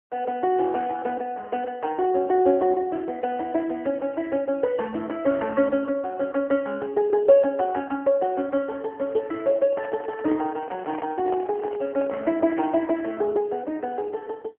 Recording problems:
phone line; 220 Hz to 3.6 kHz, AMR-NB
handling noise; from 9.5 to 13 s; peak -5 dB vs average level

